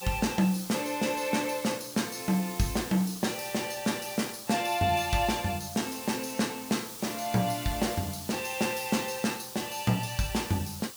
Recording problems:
background hiss; SNR 11 dB
crackling; from 2 to 4 s and from 7.5 to 9.5 s; loose cable, SNR 22 dB

